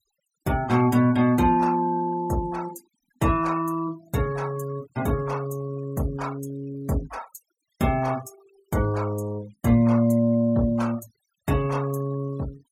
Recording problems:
noise reduction artefacts; signal-to-artefact ratio 22 dB

